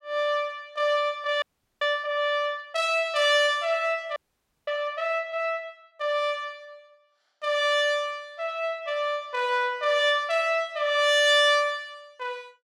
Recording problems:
frozen audio; at 1.5 s and at 4 s for 0.5 s

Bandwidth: 16 kHz